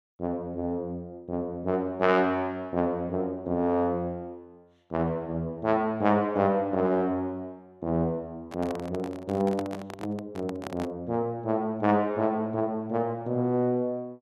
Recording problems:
handling noise; from 8.5 to 11 s; peak -4 dB vs average level

